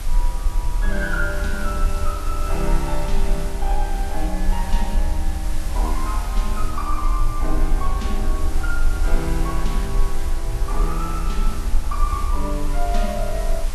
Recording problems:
lossy compression; Vorbis, log-spectral distance 2 dB, nothing above 13.5 kHz
hiss; slope -2 dB per octave, SNR 8 dB
rumble; below 38 Hz, strongest tone 18 Hz, SNR -2 dB

